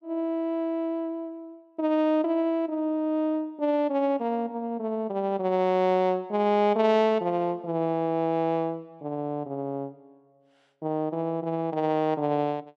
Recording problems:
none

